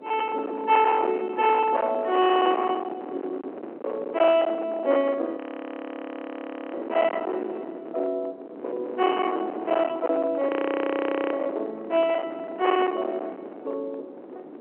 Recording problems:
phone line; 280 Hz to 3.3 kHz, G.711
distortion; hard clipping, signal-to-distortion ratio 11 dB
wind noise; below 1 kHz, SNR 9 dB
audio freezing; at 5.5 s for 1.5 s and at 10 s for 1 s

